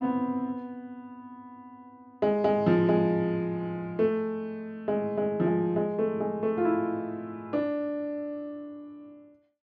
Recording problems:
none

